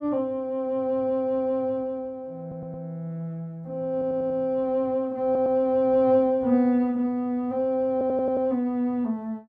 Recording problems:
stutter; 4 times, first at 2.5 s

